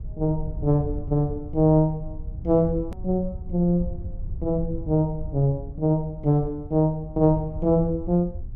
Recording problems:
low-frequency rumble; below 84 Hz, SNR 12 dB
edit click; at 3 s

